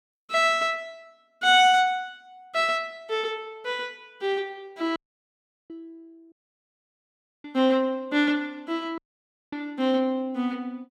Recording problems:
dropout; at 5 s for 0.5 s, at 6.5 s for 1 s and at 9 s for 0.5 s

